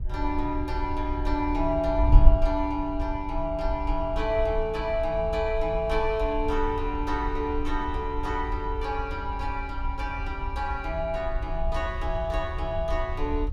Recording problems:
wind noise; below 58 Hz, SNR 3 dB

